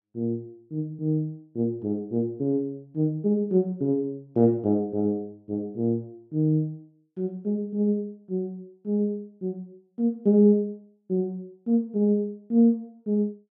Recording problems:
none

